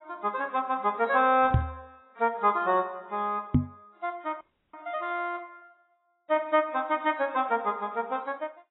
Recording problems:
lossy codec; AAC, log-spectral distance 2 dB, nothing above 3.5 kHz
microphone thump; at 1.5 s and at 3.5 s; peak +9 dB vs average level
audio freezing; at 4.5 s

